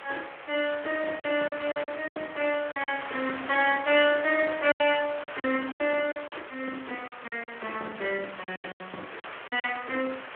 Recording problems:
telephone audio; 340 Hz to 3.3 kHz, Speex
hiss; SNR 12 dB
packet loss; 10% of the sound replaced, filled with silence
crackle; at 2.5 s, from 4 to 6 s and from 8 to 9.5 s; loose cable, SNR 24 dB

